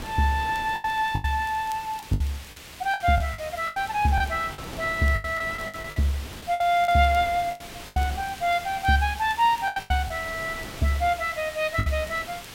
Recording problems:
hiss; SNR 16 dB
wind noise; below 1.1 kHz, SNR 18 dB
crackle; vinyl, SNR 29 dB
packet loss; 11% of the sound replaced, filled with the last packet

